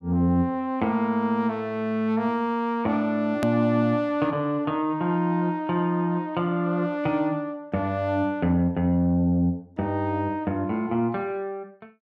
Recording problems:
edit click; at 3.5 s

